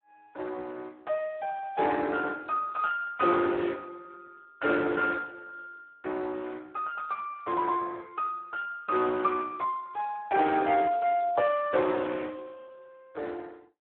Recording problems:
telephone audio; 260 Hz to 3.6 kHz, Speex

